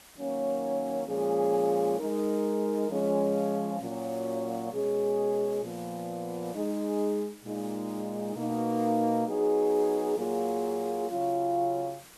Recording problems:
hiss; slope -1 dB per octave, SNR 21 dB

